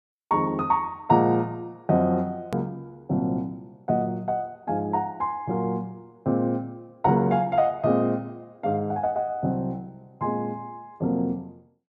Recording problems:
edit click; at 2.5 s

